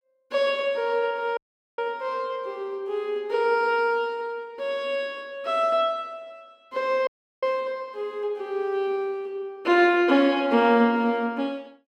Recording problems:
audio cutting out; at 1.5 s and at 7 s

